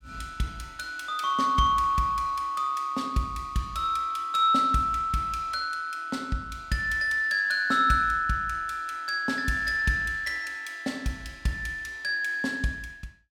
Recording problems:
none

